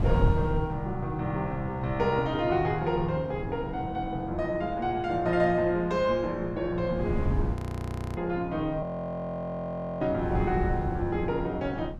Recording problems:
wind noise; below 140 Hz, SNR 7 dB
audio freezing; at 7.5 s for 0.5 s and at 9 s for 1 s

